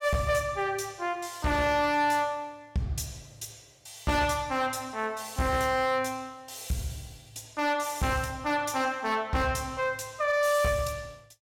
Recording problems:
distortion; hard clipping, uneven, signal-to-distortion ratio 10 dB

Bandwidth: 17.5 kHz